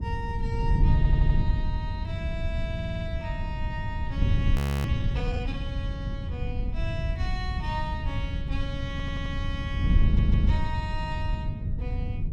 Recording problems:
wind noise; below 110 Hz, SNR -9 dB
stutter; 4 times, first at 1 s
audio freezing; at 4.5 s

